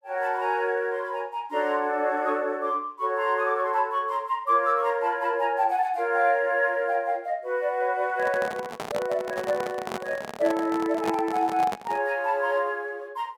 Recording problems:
handling noise; from 8 to 12 s; peak 0 dB vs average level

